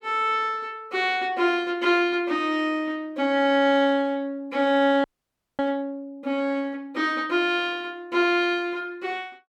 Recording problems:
audio freezing; at 5 s for 0.5 s

